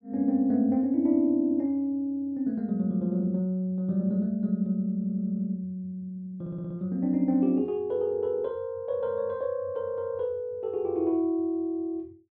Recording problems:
stutter; at 5 s and at 6.5 s

